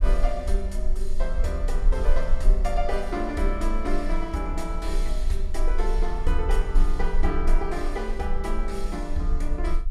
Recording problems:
rumble; below 34 Hz, strongest tone 20 Hz, SNR -2 dB

